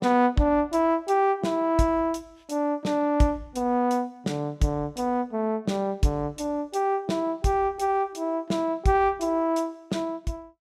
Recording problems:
none

